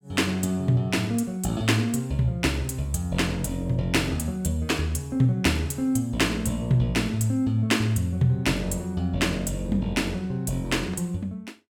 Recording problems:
none

